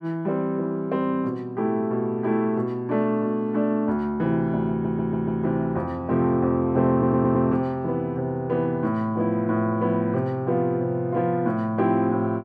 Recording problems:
stutter; at 4.5 s and at 7 s

